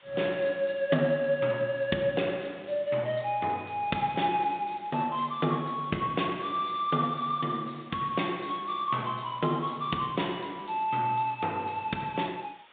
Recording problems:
phone line; 170 Hz to 3.7 kHz, G.726
hiss; SNR 27 dB

